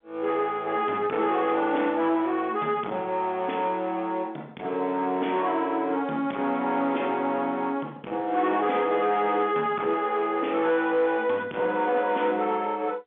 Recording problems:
telephone audio; 190 Hz to 3.6 kHz, G.711
distorted audio; soft clipping, signal-to-distortion ratio 11 dB

